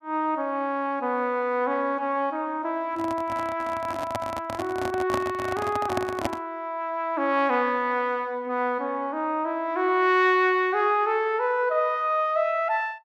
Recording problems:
microphone handling noise; from 3 to 6.5 s; peak +2 dB vs average level

